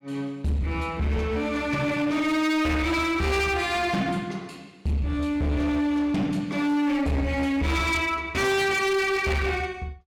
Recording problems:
distorted audio; hard clipping, uneven, signal-to-distortion ratio 8 dB

